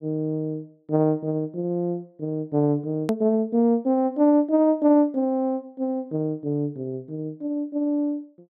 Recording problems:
hard cut with a click; at 3 s

